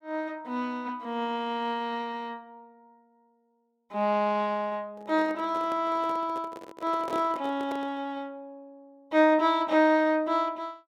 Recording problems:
microphone handling noise; from 5 to 8 s; peak -5 dB vs average level

